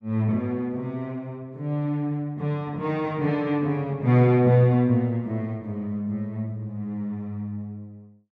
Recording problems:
none

